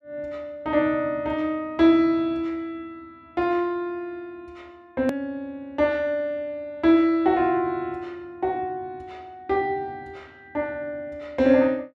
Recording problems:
hard cut with a click; at 5 s

